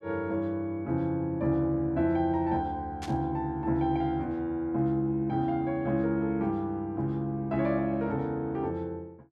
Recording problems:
burst of static; at 3 s; peak -8 dB vs average level

